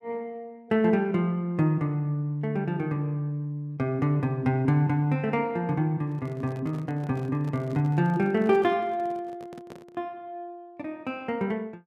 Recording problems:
microphone handling noise; from 6 to 10 s; peak -11 dB vs average level

